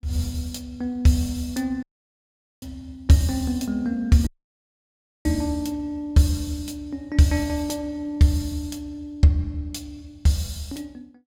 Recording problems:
dropout; at 2 s for 1 s and at 4.5 s for 1 s

